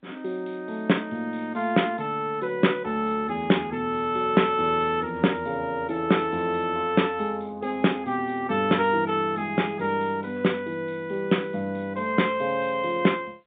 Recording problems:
phone line; 190 Hz to 3.6 kHz, G.711

